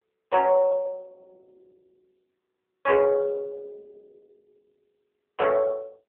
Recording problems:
telephone audio; 300 Hz to 3.6 kHz, AMR-NB

